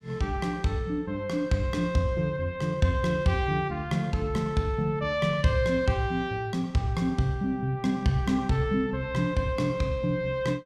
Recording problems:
none

